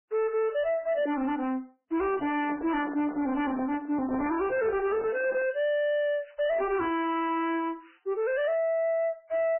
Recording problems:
lossy codec; MP3, log-spectral distance 3 dB, nothing above 2.7 kHz
distorted audio; soft clipping, signal-to-distortion ratio 6 dB
handling noise; from 2 to 5.5 s; peak -6 dB vs average level

